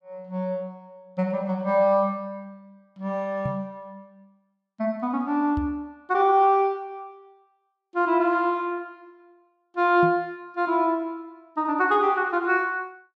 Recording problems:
microphone bump; at 3.5 s, at 5.5 s and at 10 s; peak -2 dB vs average level

